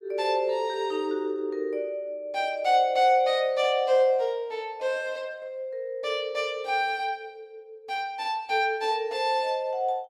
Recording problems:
none

